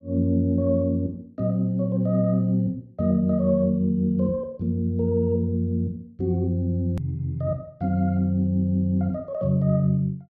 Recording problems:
click at an edit; at 7 s

